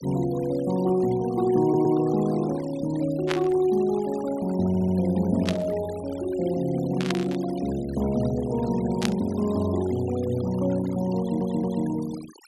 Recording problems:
noise reduction artefacts; signal-to-artefact ratio 19 dB
stutter; at 1.5 s, at 4.5 s and at 11 s
static burst; 4 times, first at 3.5 s; peak +1 dB vs average level

